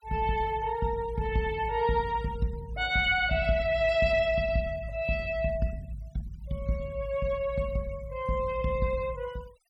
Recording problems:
noise reduction artefacts; signal-to-artefact ratio 24 dB

